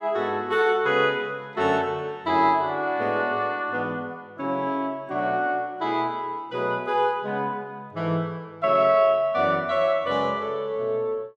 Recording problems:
none

